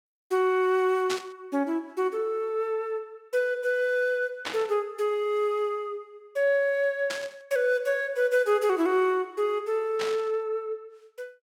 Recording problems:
static burst; 4 times, first at 1 s; peak -1 dB vs average level

